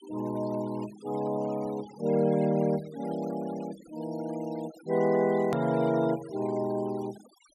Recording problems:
noise reduction artefacts; signal-to-artefact ratio 20 dB
edit click; at 5.5 s

